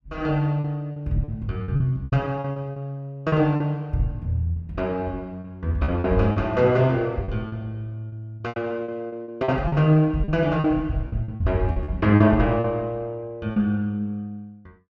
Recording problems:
lost packets; 10% of the sound replaced, filled with repeated pitch periods

